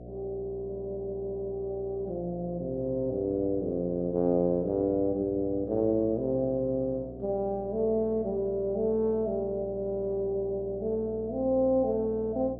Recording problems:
electrical hum; 60 Hz, harmonics up to 720 Hz, SNR 14 dB

